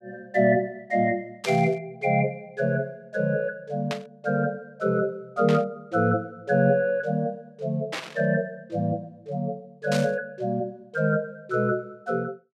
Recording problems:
burst of static; 5 times, first at 1.5 s; peak -2 dB vs average level

